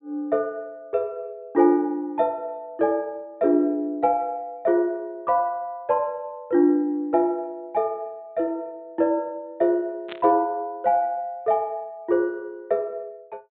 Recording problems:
low-pass filter; nothing above 4 kHz
burst of static; at 10 s; peak -8 dB vs average level

